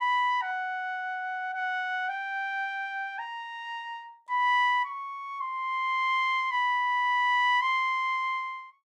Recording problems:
none

